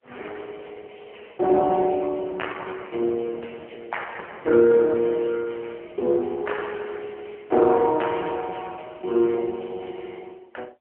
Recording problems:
phone line; 260 Hz to 3.1 kHz, AMR-NB

